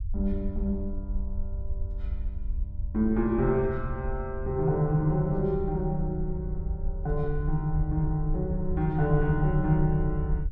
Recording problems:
rumble; below 66 Hz, SNR 7 dB

